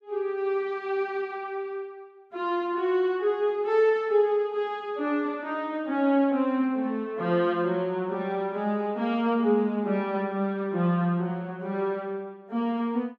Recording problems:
none

